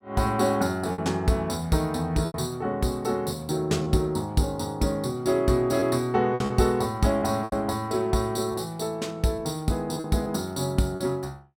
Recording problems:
packet loss; 5% of the sound replaced, filled with repeated pitch periods

